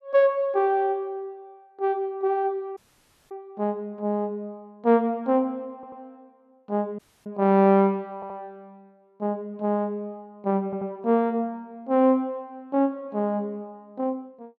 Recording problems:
audio cutting out; at 3 s for 0.5 s and at 7 s
audio stuttering; at 5.5 s, at 8 s and at 11 s

